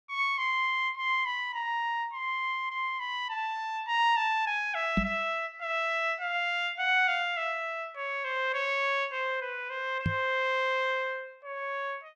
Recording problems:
microphone thump; at 5 s and at 10 s; peak +5 dB vs average level

